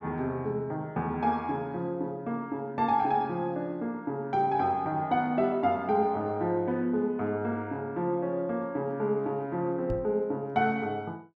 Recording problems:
knock on the microphone; at 10 s; peak -2 dB vs average level

